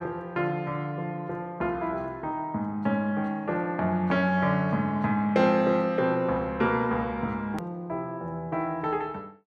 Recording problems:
edit click; at 7.5 s

